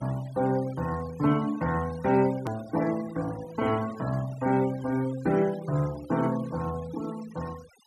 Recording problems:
noise reduction artefacts; signal-to-artefact ratio 18 dB
hard cut with a click; at 2.5 s

